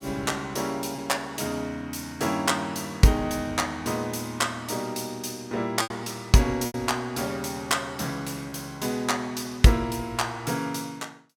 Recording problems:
lost packets; 2% of the sound replaced, filled with repeated pitch periods

